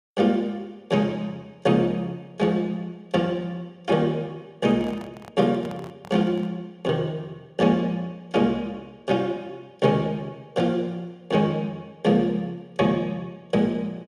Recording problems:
microphone handling noise; from 4.5 to 6.5 s; peak -12 dB vs average level

